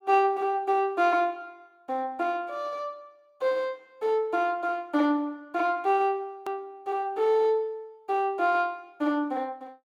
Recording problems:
edit click; at 6.5 s

